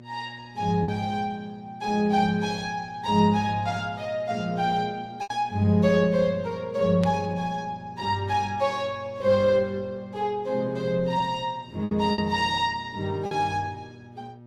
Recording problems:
codec artefacts; Opus, log-spectral distance 2 dB
hum; 60 Hz, harmonics up to 960 Hz, SNR 22 dB
lost packets; 3% of the sound replaced, filled with repeated pitch periods
burst of static; at 7 s; peak -8 dB vs average level

